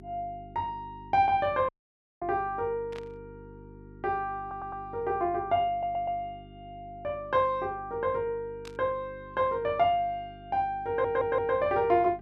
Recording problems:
hum; 50 Hz, harmonics up to 400 Hz, SNR 20 dB
dropout; at 1.5 s for 0.5 s
burst of static; at 3 s and at 8.5 s; peak -12 dB vs average level
audio stuttering; at 4.5 s, at 5.5 s and at 11 s

